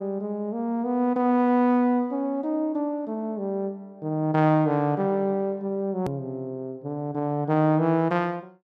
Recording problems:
click at an edit; at 6 s

